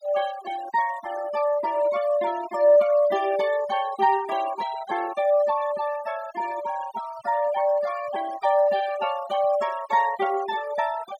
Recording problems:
noise reduction artefacts; signal-to-artefact ratio 16 dB

